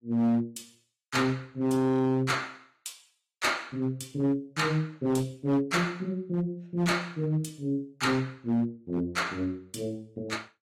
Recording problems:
codec artefacts; AAC, log-spectral distance 2 dB, nothing above 14.7 kHz
distorted audio; hard clipping, signal-to-distortion ratio 11 dB

